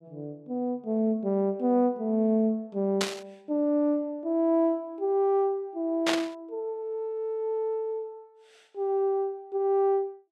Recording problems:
burst of static; at 3 s and at 6 s; peak +4 dB vs average level

